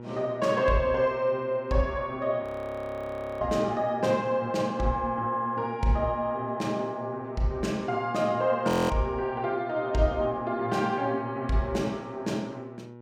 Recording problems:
hum; 60 Hz, harmonics up to 1.4 kHz, SNR 16 dB
frozen audio; at 2.5 s for 1 s and at 8.5 s

